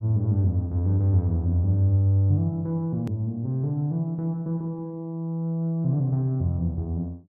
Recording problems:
edit click; at 3 s

